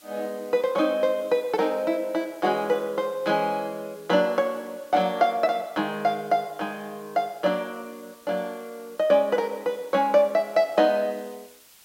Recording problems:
hiss; slope +1 dB per octave, SNR 27 dB

